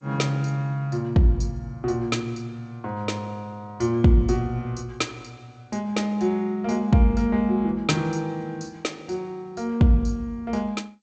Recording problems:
lossy compression; G.722, log-spectral distance 2 dB, nothing above 7.8 kHz

